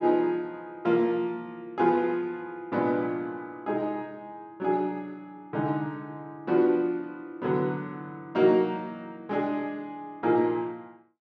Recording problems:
none

